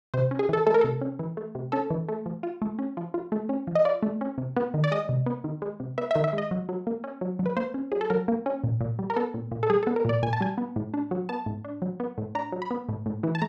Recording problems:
none

